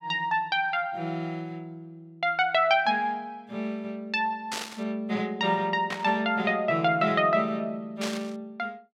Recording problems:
static burst; at 4.5 s, at 6 s and at 8 s; peak -2 dB vs average level

